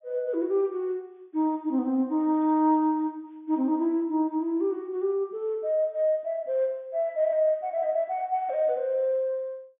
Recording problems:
treble cut off; nothing above 3.5 kHz

